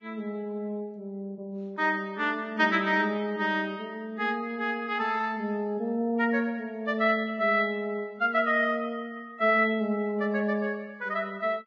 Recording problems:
codec artefacts; Vorbis, log-spectral distance 2 dB

